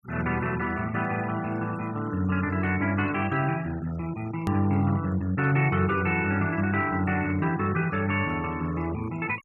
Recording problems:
noise reduction artefacts; signal-to-artefact ratio 19 dB
click at an edit; at 4.5 s

